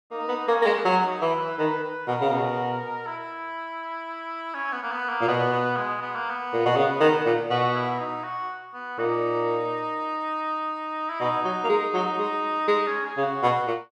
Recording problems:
none

